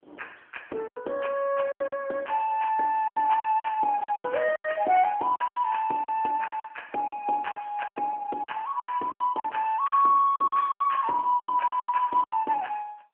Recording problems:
phone line; 320 Hz to 3.3 kHz, AMR-NB
packet loss; 13% of the sound replaced, filled with silence

